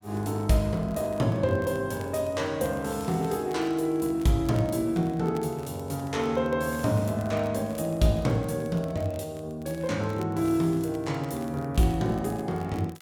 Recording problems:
crackling; vinyl, SNR 26 dB

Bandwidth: 17 kHz